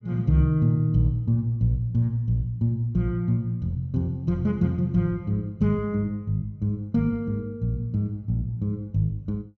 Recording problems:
none

